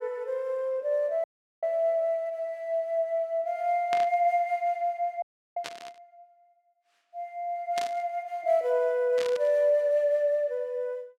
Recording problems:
audio cutting out; at 1 s and at 5 s
static burst; 4 times, first at 4 s; peak -4 dB vs average level

